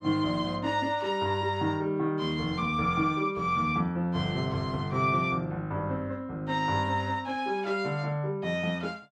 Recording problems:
none

